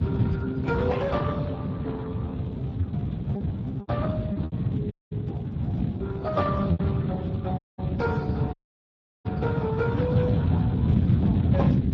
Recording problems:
lossy compression; AAC, then Speex, log-spectral distance 3 dB
low-frequency rumble; below 150 Hz, SNR 10 dB
wind on the microphone; below 210 Hz, SNR -4 dB
lost packets; 3% of the sound replaced, filled with repeated pitch periods
audio cutting out; at 5 s, at 7.5 s and at 8.5 s for 0.5 s

